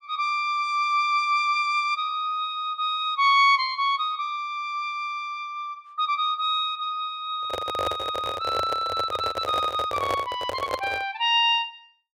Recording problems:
microphone handling noise; from 7.5 to 11 s; peak 0 dB vs average level

